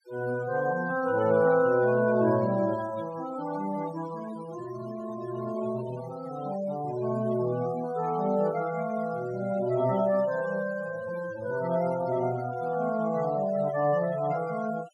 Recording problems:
noise reduction artefacts; signal-to-artefact ratio 16 dB

